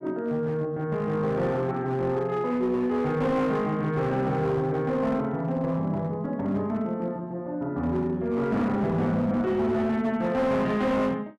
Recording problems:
distorted audio; hard clipping, signal-to-distortion ratio 11 dB

